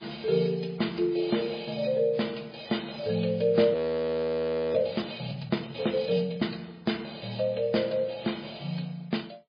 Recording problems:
lossy codec; MP3, log-spectral distance 7 dB, nothing above 4.1 kHz
audio freezing; at 3.5 s for 1 s

